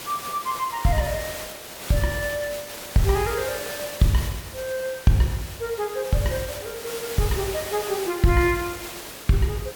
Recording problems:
hiss; slope -2 dB per octave, SNR 9 dB

